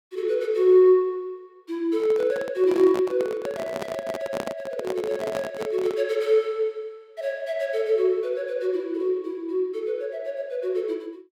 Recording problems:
microphone handling noise; from 2 to 6 s; peak -2 dB vs average level

